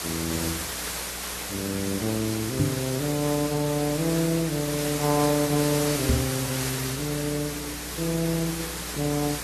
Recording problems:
lossy compression; AAC, log-spectral distance 13 dB, nothing above 13.1 kHz
hum; 60 Hz, harmonics up to 420 Hz, SNR 18 dB
hiss; slope -1 dB per octave, SNR 2 dB
knock on the microphone; at 2.5 s and at 6 s; peak +8 dB vs average level

